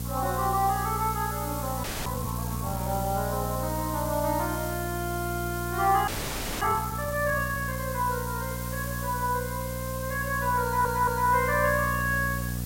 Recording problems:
hum; 60 Hz, harmonics up to 720 Hz, SNR 6 dB
background hiss; slope 0 dB per octave, SNR 10 dB
frozen audio; at 2 s and at 6 s for 0.5 s
audio stuttering; at 11 s

